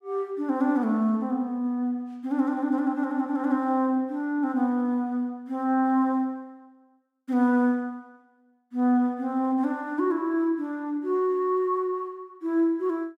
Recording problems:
none

